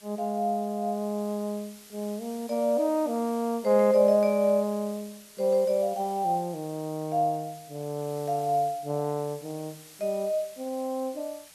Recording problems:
background hiss; slope +1 dB per octave, SNR 21 dB

